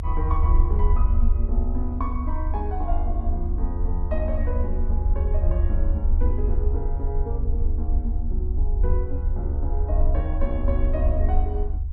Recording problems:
rumble; below 74 Hz, strongest tone 26 Hz, SNR -8 dB

